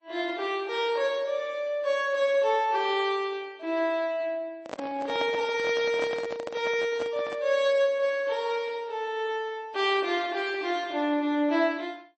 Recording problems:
lossy codec; MP3, then AAC, log-spectral distance 2 dB, nothing above 8 kHz
microphone handling noise; from 4.5 to 7.5 s; peak -3 dB vs average level

